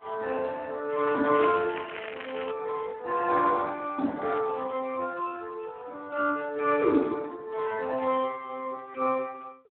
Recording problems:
telephone audio; 240 Hz to 3.5 kHz, Speex
crackle; from 1.5 to 2.5 s; loose cable, SNR 10 dB

